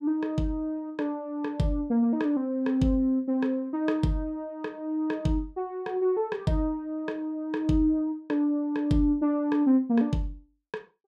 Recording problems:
none

